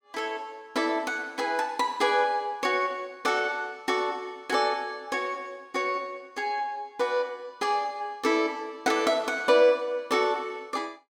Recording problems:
none

